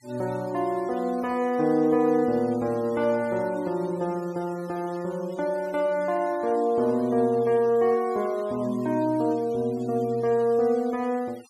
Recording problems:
noise reduction artefacts; signal-to-artefact ratio 24 dB

